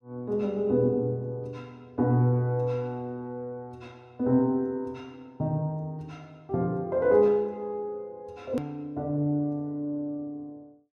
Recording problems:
edit click; at 8.5 s

